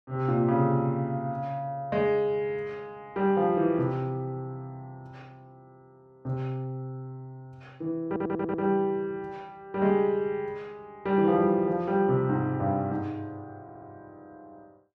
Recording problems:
stutter; at 8 s and at 14 s

